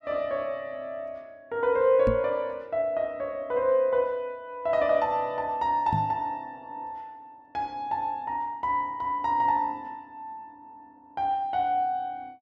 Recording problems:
microphone bump; at 2 s and at 6 s; peak +2 dB vs average level

